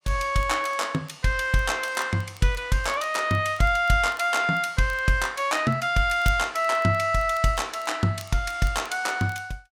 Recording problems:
crackling; vinyl, SNR 27 dB

